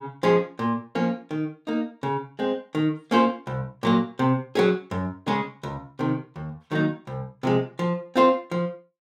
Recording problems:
none

